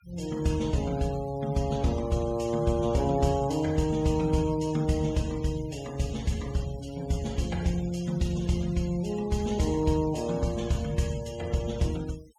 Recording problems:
denoising artefacts; signal-to-artefact ratio 20 dB

